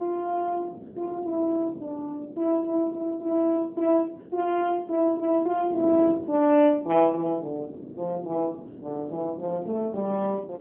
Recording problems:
phone line; 220 Hz to 3.5 kHz, AMR-NB
wind on the microphone; below 440 Hz, SNR 16 dB

